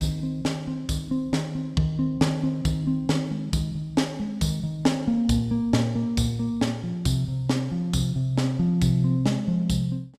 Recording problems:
none

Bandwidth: 14.5 kHz